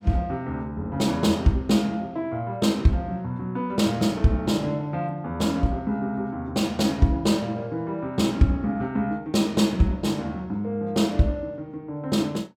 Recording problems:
none

